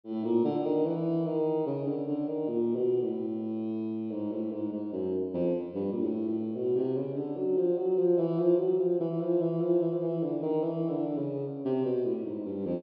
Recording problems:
treble missing; nothing above 5.5 kHz

